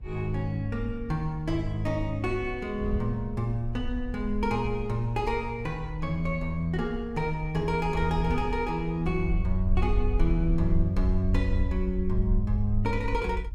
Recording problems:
rumble; below 58 Hz, SNR 5 dB
wind noise; below 100 Hz, SNR 13 dB

